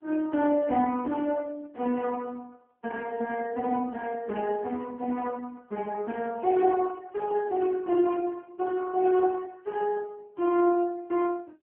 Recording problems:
telephone audio; 220 Hz to 3.1 kHz, AMR-NB

